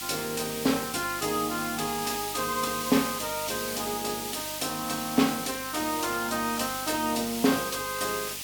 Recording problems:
lossy codec; AAC, log-spectral distance 4 dB
hum; 50 Hz, harmonics up to 700 Hz, SNR 21 dB
hiss; SNR 5 dB

